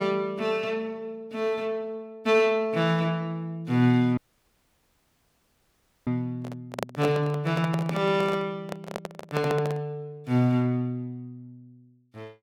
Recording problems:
audio cutting out; at 4 s for 2 s
handling noise; from 6.5 to 10 s; peak +1 dB vs average level

